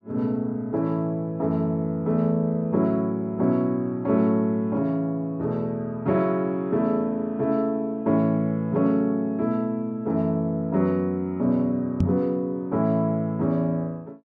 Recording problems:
microphone bump; at 12 s; peak +5 dB vs average level

